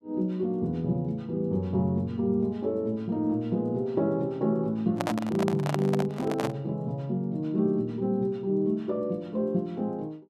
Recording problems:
microphone handling noise; from 5 to 6.5 s; peak +2 dB vs average level

